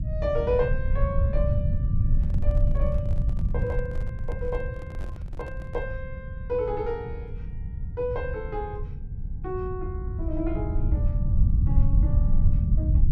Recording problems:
low-frequency rumble; below 94 Hz, SNR -5 dB
microphone handling noise; from 2 to 6 s; peak -8 dB vs average level

